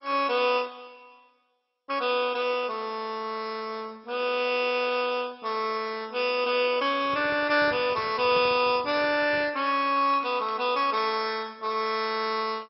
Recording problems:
lossy compression; MP2, log-spectral distance 5 dB, nothing above 5.3 kHz
handling noise; from 7 to 9.5 s; peak -11 dB vs average level
crackle; at 8 s and from 10 to 11 s; loose cable, SNR 26 dB

